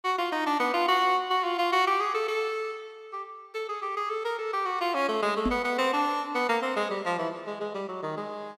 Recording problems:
microphone thump; at 5.5 s; peak +3 dB vs average level

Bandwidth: 16.5 kHz